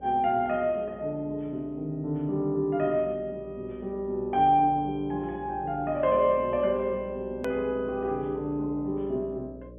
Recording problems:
treble missing; nothing above 3.5 kHz
electrical hum; 60 Hz, harmonics up to 600 Hz, SNR 20 dB
click at an edit; at 7.5 s

